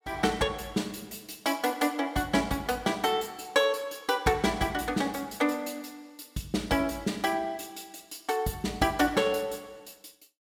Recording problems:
none

